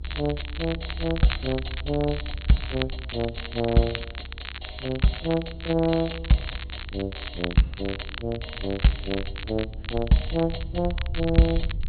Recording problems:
low-pass filter; nothing above 4.3 kHz
hum; 50 Hz, harmonics up to 950 Hz, SNR 26 dB
low-frequency rumble; below 68 Hz, SNR 10 dB
crackle; vinyl, SNR 11 dB

